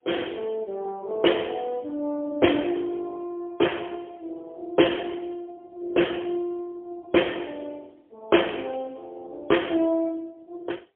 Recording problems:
telephone audio; 280 Hz to 3.3 kHz, AMR-NB, then MP3

